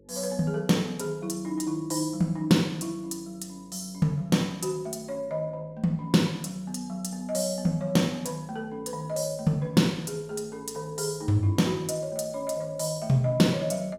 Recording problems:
hum; 50 Hz, harmonics up to 550 Hz, SNR 28 dB

